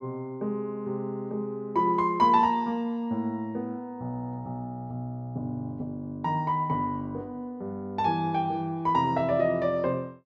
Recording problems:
none

